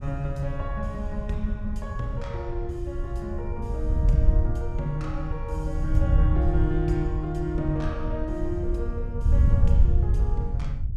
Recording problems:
wind noise; below 80 Hz, SNR -5 dB

